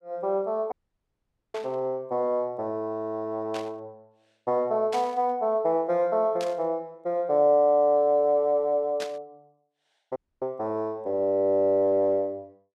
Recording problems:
dropout; at 0.5 s for 1 s and at 10 s
static burst; 5 times, first at 1.5 s; peak -7 dB vs average level

